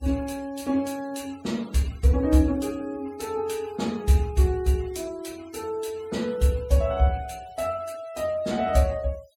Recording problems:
denoising artefacts; signal-to-artefact ratio 24 dB

